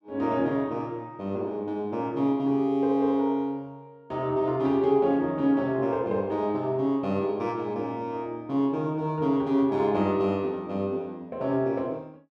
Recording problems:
none

